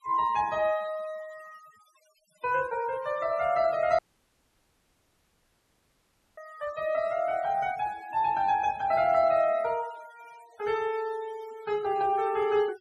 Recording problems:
denoising artefacts; signal-to-artefact ratio 22 dB
audio cutting out; at 4 s for 2.5 s

